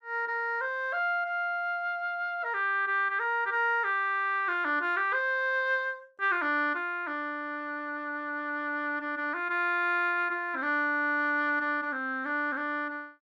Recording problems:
none

